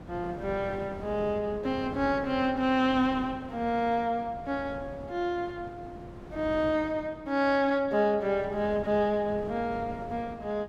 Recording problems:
wind on the microphone; below 480 Hz, SNR 15 dB

